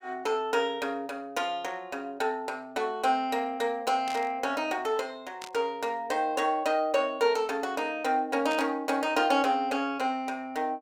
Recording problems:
burst of static; at 4 s, at 5.5 s and at 8.5 s; peak -7 dB vs average level

